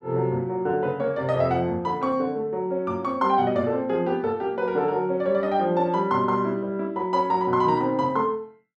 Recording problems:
none

